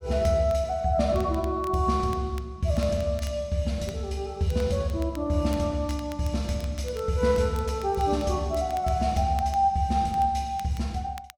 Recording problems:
crackling; vinyl, SNR 24 dB

